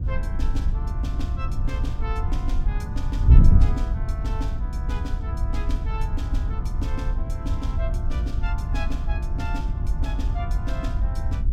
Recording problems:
wind on the microphone; below 82 Hz, SNR -11 dB

